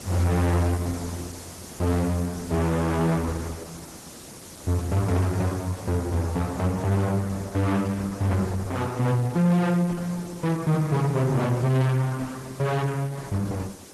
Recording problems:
lossy codec; Vorbis, then Opus, log-spectral distance 5 dB
distortion; soft clipping, signal-to-distortion ratio 10 dB
background hiss; SNR 17 dB

